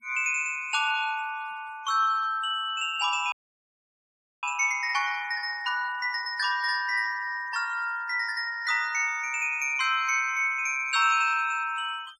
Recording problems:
denoising artefacts; signal-to-artefact ratio 26 dB
audio freezing; at 3.5 s for 1 s

